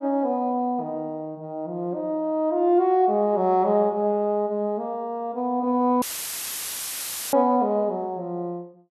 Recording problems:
dropout; at 6 s for 1.5 s; filled with static

